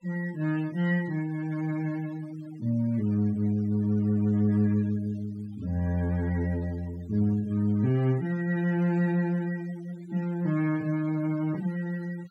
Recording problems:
noise reduction artefacts; signal-to-artefact ratio 23 dB

